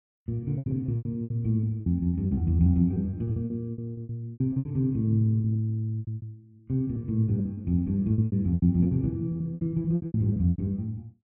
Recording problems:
packet loss; 20% of the sound replaced, filled with repeated pitch periods

